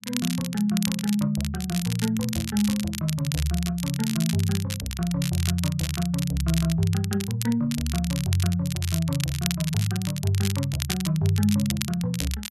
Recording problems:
crackle; vinyl, SNR 8 dB

